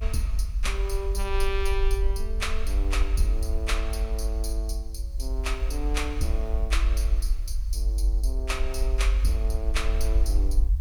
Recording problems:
hiss; slope -1 dB per octave, SNR 28 dB
low-frequency rumble; below 50 Hz, strongest tone 46 Hz, SNR -5 dB

